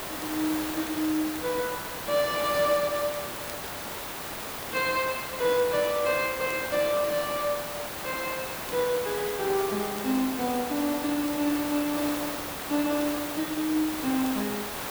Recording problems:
hiss; SNR 5 dB
crackle; vinyl, SNR 24 dB

